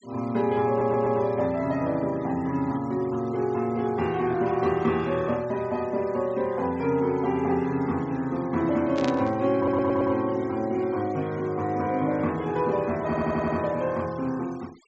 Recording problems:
treble cut off; nothing above 8 kHz
noise reduction artefacts; signal-to-artefact ratio 24 dB
stutter; at 0.5 s, at 9.5 s and at 13 s
static burst; at 9 s; peak -6 dB vs average level

